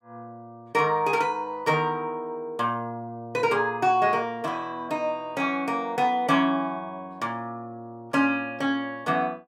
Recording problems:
none

